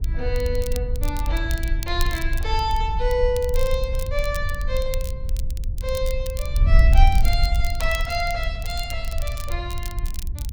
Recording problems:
wind on the microphone; below 58 Hz, SNR -2 dB
crackle; vinyl, SNR 12 dB

